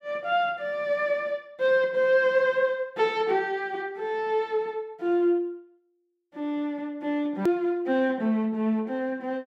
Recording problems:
click at an edit; at 7.5 s

